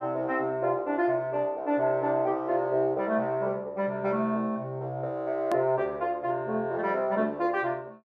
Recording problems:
hard cut with a click; at 5.5 s

